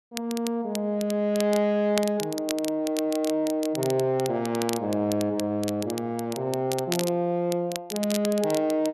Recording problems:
crackling; vinyl, SNR 11 dB

